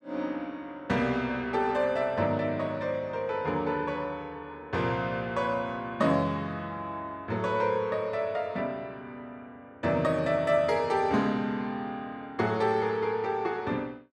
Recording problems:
none

